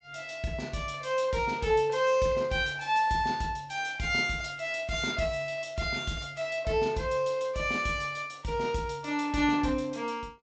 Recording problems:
treble missing; nothing above 8 kHz

